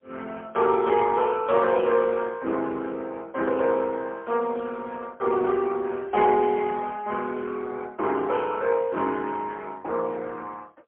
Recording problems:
telephone audio; 240 Hz to 3 kHz, AMR-NB, then MP3

